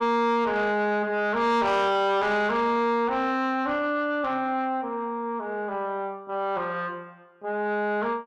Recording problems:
distortion; soft clipping, signal-to-distortion ratio 10 dB

